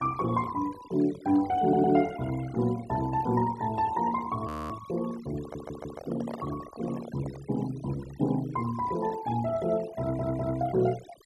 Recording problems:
denoising artefacts; signal-to-artefact ratio 17 dB
stutter; at 1.5 s, at 5.5 s and at 10 s
frozen audio; at 4.5 s
microphone handling noise; from 5.5 to 7.5 s; peak -6 dB vs average level

